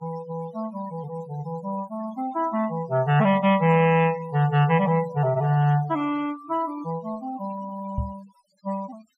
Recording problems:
denoising artefacts; signal-to-artefact ratio 20 dB
microphone bump; at 8 s; peak 0 dB vs average level

